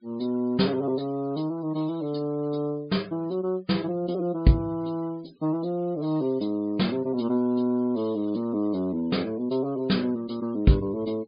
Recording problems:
treble cut off; nothing above 5 kHz
noise reduction artefacts; signal-to-artefact ratio 27 dB

